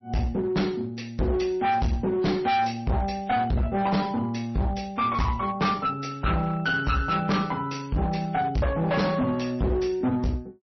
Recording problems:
lossy codec; MP3, log-spectral distance 2 dB, nothing above 5.8 kHz
distortion; hard clipping, uneven, signal-to-distortion ratio 6 dB

